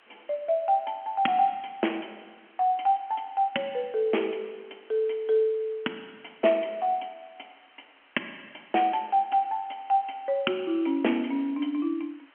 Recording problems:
phone line; 190 Hz to 3.2 kHz, G.711
hiss; SNR 30 dB

